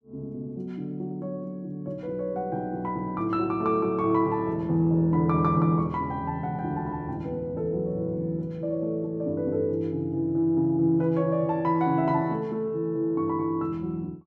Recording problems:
none

